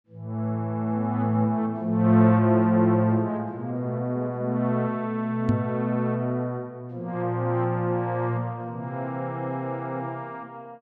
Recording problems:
microphone bump; at 5.5 s; peak +4 dB vs average level

